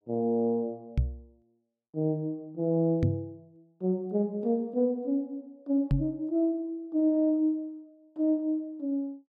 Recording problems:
knock on the microphone; at 1 s, at 3 s and at 6 s; peak +6 dB vs average level

